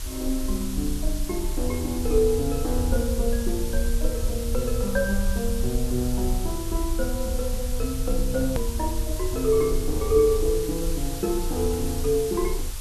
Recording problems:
background hiss; slope 0 dB per octave, SNR 10 dB
rumble; below 56 Hz, strongest tone 26 Hz, SNR 5 dB
edit click; at 8.5 s

